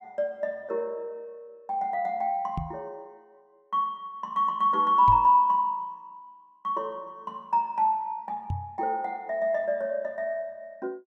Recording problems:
microphone bump; at 2.5 s, at 5 s and at 8.5 s; peak -1 dB vs average level

